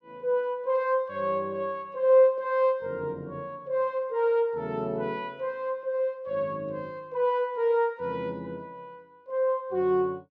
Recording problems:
none

